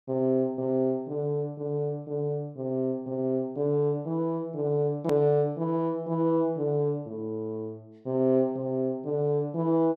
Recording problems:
edit click; at 5 s

